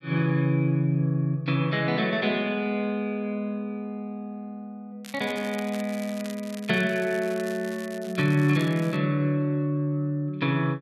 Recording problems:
crackling; from 5 to 9 s; loose cable, SNR 18 dB

